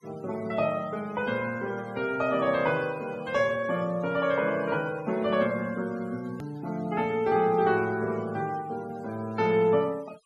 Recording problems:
denoising artefacts; signal-to-artefact ratio 22 dB
edit click; at 6.5 s

